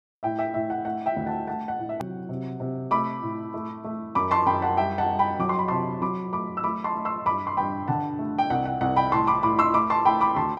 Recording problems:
hard cut with a click; at 2 s

